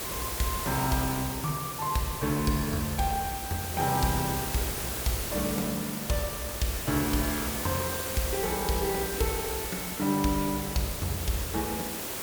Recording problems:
hiss; slope -3 dB per octave, SNR 2 dB

